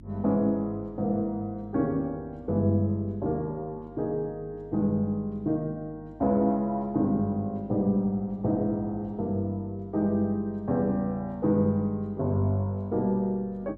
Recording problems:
electrical hum; 50 Hz, harmonics up to 350 Hz, SNR 22 dB

